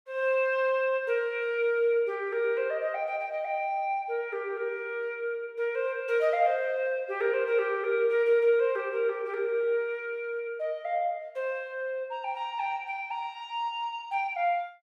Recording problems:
none

